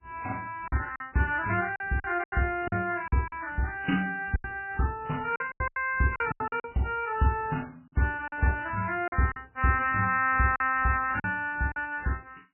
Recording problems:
lossy codec; MP3, log-spectral distance 3 dB
lost packets; 9% of the sound replaced, filled with silence

